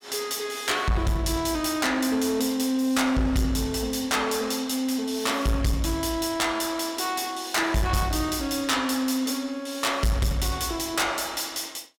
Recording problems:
distorted audio; soft clipping, signal-to-distortion ratio 11 dB

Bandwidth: 17.5 kHz